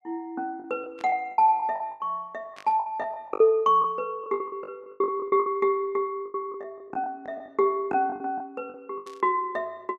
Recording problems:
packet loss; 14% of the sound replaced, filled with the last packet
burst of static; at 1 s, at 2.5 s and at 9 s; peak -14 dB vs average level

